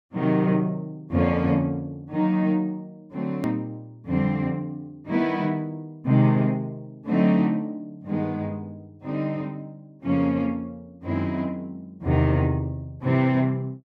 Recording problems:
hard cut with a click; at 3.5 s

